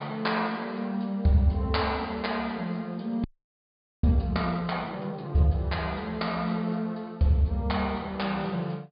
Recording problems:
treble cut off; nothing above 4.9 kHz
audio freezing; at 3 s for 1 s

